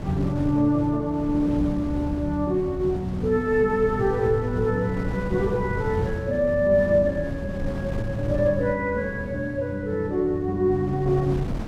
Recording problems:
wind on the microphone; below 250 Hz, SNR 10 dB

